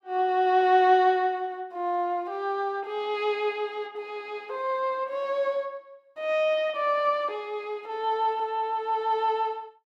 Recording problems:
none

